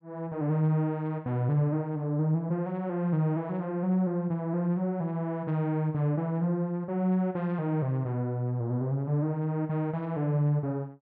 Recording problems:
none

